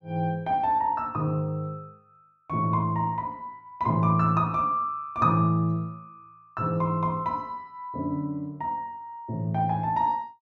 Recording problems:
none

